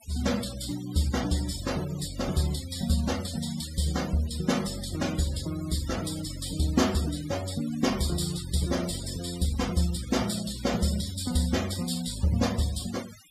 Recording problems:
noise reduction artefacts; signal-to-artefact ratio 13 dB

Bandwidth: 14.5 kHz